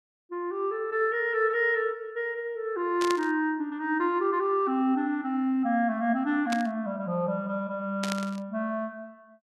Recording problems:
static burst; at 3 s, at 6.5 s and at 8 s; peak -1 dB vs average level

